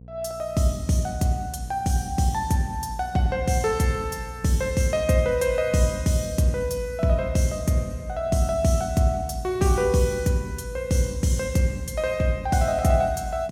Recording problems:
electrical hum; 60 Hz, harmonics up to 540 Hz, SNR 20 dB

